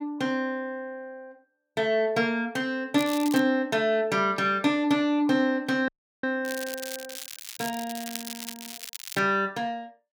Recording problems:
crackle; at 3 s and from 6.5 to 9 s; loose cable, SNR 11 dB
dropout; at 6 s

